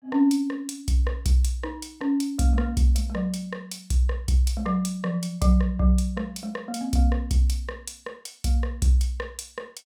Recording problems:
none

